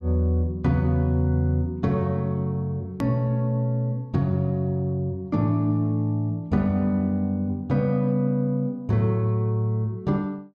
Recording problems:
edit click; at 3 s

